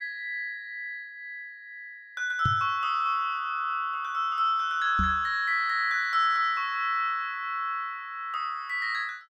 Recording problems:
knock on the microphone; at 2.5 s and at 5 s; peak +2 dB vs average level

